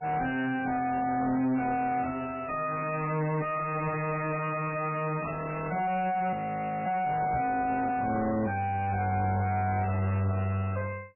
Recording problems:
codec artefacts; MP3, log-spectral distance 4 dB, nothing above 2.5 kHz
distorted audio; soft clipping, signal-to-distortion ratio 6 dB
frozen audio; at 6.5 s for 0.5 s
microphone thump; at 7.5 s; peak +4 dB vs average level

